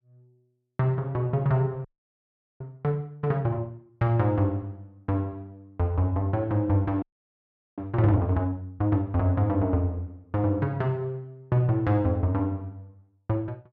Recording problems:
audio freezing; at 2 s for 1 s and at 7 s for 1 s

